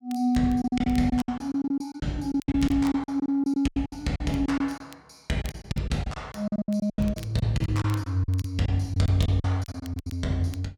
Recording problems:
crackle; vinyl, SNR 24 dB
packet loss; 17% of the sound replaced, filled with silence

